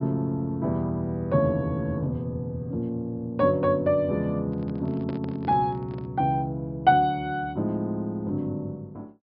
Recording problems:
treble cut off; nothing above 5.5 kHz
handling noise; from 4.5 to 6 s; peak -8 dB vs average level

